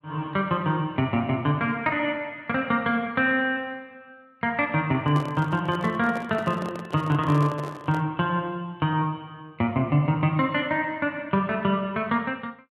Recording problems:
microphone handling noise; from 5 to 8 s; peak -6 dB vs average level

